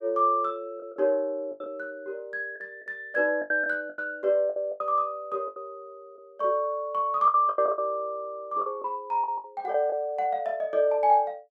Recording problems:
packet loss; 9% of the sound replaced, filled with the last packet

